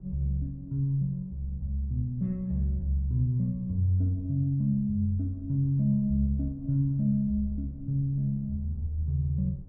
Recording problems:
low-frequency rumble; below 110 Hz, SNR 20 dB

